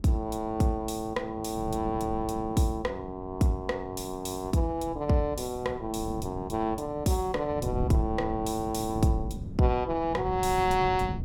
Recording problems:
wind noise; below 180 Hz, SNR 10 dB

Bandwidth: 17 kHz